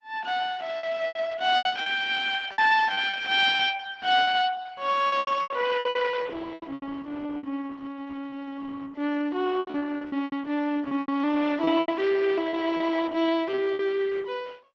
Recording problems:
codec artefacts; Opus, log-spectral distance 4 dB, nothing above 7.8 kHz
lost packets; 13% of the sound replaced, filled with repeated pitch periods

